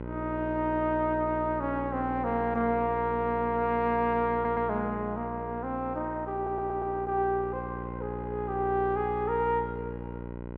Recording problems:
mains hum; 60 Hz, harmonics up to 1.5 kHz, SNR 9 dB
audio stuttering; at 4.5 s and at 6.5 s

